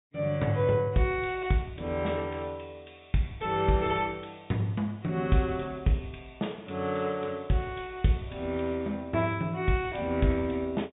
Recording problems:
low-pass filter; nothing above 4 kHz

